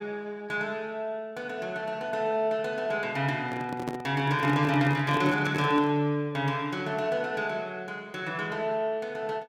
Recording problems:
microphone handling noise; from 3.5 to 6 s; peak -1 dB vs average level

